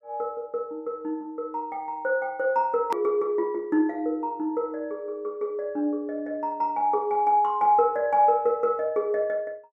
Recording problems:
click at an edit; at 3 s

